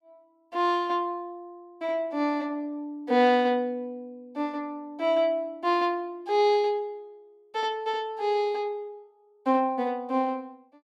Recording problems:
none

